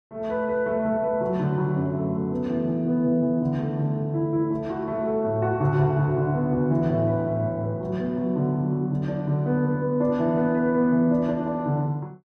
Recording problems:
none

